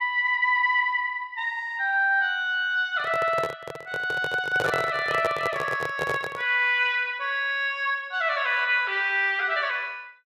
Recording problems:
microphone handling noise; from 3 to 6.5 s; peak 0 dB vs average level

